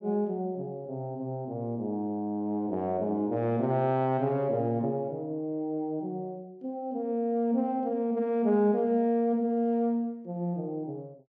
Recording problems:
none

